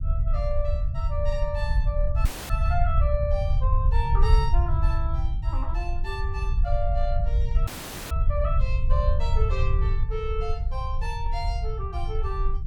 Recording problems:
low-frequency rumble; below 70 Hz, SNR -6 dB
dropout; at 2.5 s and at 7.5 s

